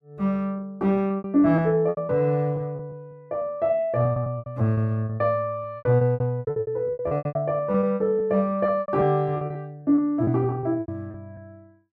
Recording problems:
lost packets; 17% of the sound replaced, filled with repeated pitch periods

